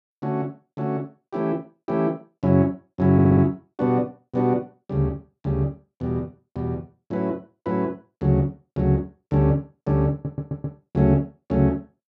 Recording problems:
stutter; at 3 s and at 10 s

